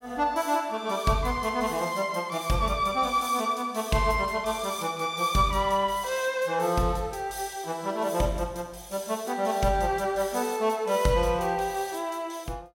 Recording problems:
none

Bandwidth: 16.5 kHz